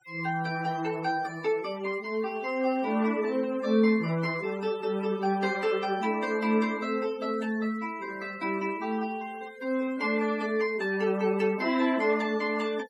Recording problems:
denoising artefacts; signal-to-artefact ratio 20 dB

